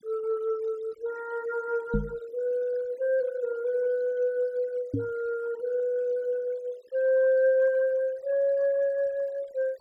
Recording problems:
noise reduction artefacts; signal-to-artefact ratio 25 dB
microphone thump; at 2 s and at 5 s; peak +3 dB vs average level

